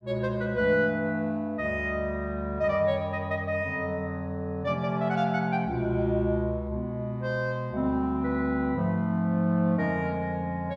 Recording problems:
none

